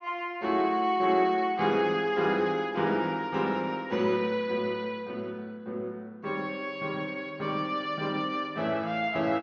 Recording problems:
low-pass filter; nothing above 6.6 kHz

